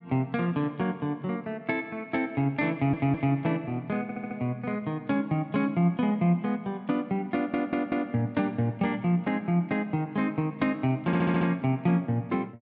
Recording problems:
stutter; 4 times, first at 2.5 s

